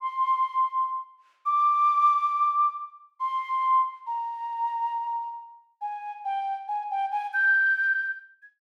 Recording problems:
none

